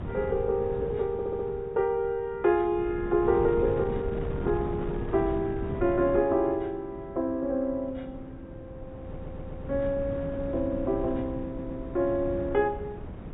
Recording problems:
low-pass filter; nothing above 4 kHz
wind on the microphone; below 280 Hz, SNR 10 dB
stutter; at 1 s, at 9 s and at 11 s

